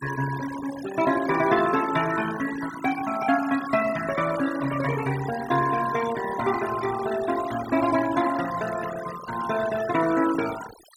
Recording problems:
denoising artefacts; signal-to-artefact ratio 11 dB

